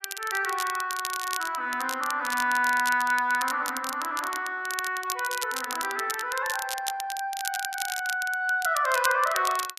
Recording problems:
crackling; vinyl, SNR 8 dB

